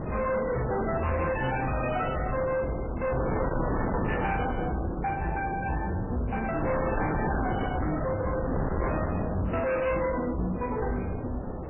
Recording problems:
codec artefacts; MP3, log-spectral distance 4 dB, nothing above 2.7 kHz
distorted audio; hard clipping, signal-to-distortion ratio 7 dB
wind noise; below 620 Hz, SNR 3 dB

